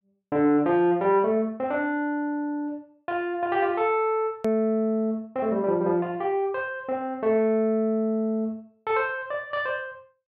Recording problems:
hard cut with a click; at 4.5 s

